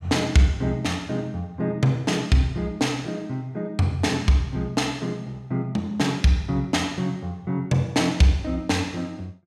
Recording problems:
none

